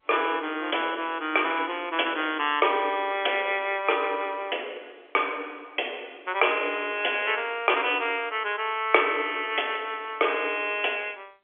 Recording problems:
telephone audio; 260 Hz to 3.4 kHz, G.711

